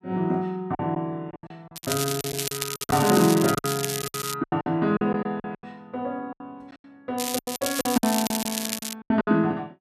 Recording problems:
lost packets; 15% of the sound replaced, filled with silence
crackle; from 2 to 4.5 s and from 7 to 9 s; loose cable, SNR 4 dB

